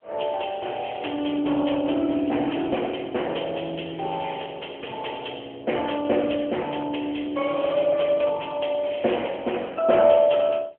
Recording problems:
telephone audio; 280 Hz to 3.1 kHz, AMR-NB

